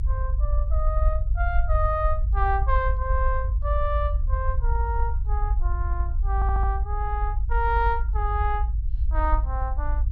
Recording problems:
low-frequency rumble; below 56 Hz, SNR -3 dB
stutter; at 6.5 s

